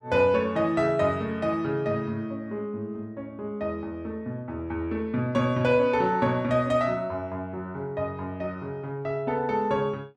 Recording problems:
none

